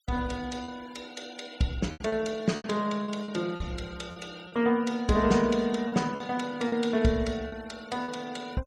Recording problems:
noise reduction artefacts; signal-to-artefact ratio 21 dB
packet loss; 7% of the sound replaced, filled with repeated pitch periods

